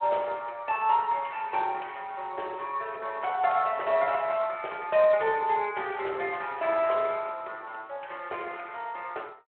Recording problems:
telephone audio; 340 Hz to 3.3 kHz, Speex

